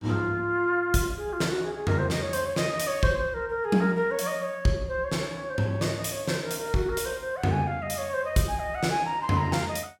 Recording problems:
none

